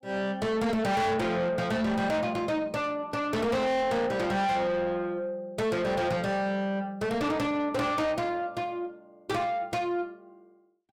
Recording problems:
distorted audio; soft clipping, signal-to-distortion ratio 7 dB

